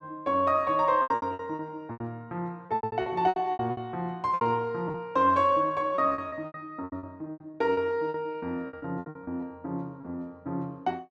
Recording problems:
lost packets; 16% of the sound replaced, filled with repeated pitch periods

